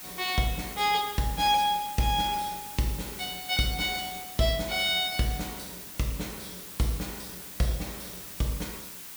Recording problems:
hiss; slope 0 dB per octave, SNR 11 dB

